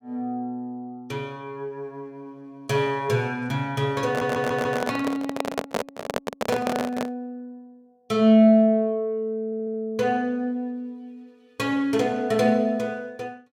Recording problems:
audio stuttering; at 4 s and at 9.5 s
microphone handling noise; from 4 to 7 s; peak +2 dB vs average level

